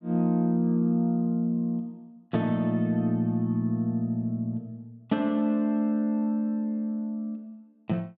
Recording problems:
none

